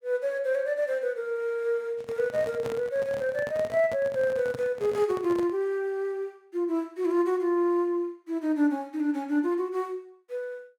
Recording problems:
microphone handling noise; from 2 to 5.5 s; peak -5 dB vs average level

